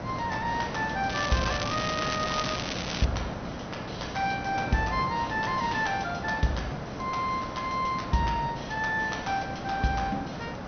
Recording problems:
treble missing; nothing above 6.2 kHz
hum; 60 Hz, harmonics up to 480 Hz, SNR 16 dB
hiss; SNR 6 dB
crackling; from 1 to 3 s; loose cable, SNR 4 dB

